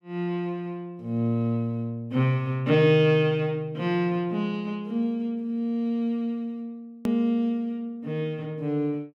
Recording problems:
click at an edit; at 7 s

